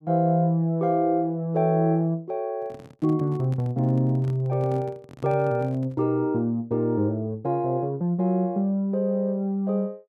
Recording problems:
microphone handling noise; from 2.5 to 6 s; peak -11 dB vs average level

